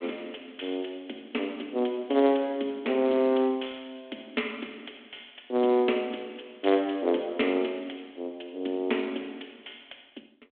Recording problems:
phone line; 220 Hz to 3.6 kHz, G.726

